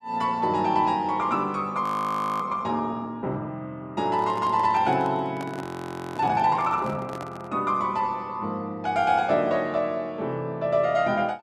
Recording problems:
frozen audio; at 2 s for 0.5 s and at 5.5 s for 0.5 s
handling noise; from 4 to 7.5 s; peak -7 dB vs average level

